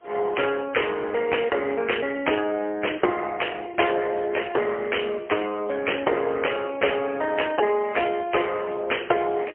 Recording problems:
phone line; 320 Hz to 3.2 kHz, AMR-NB, then MP3

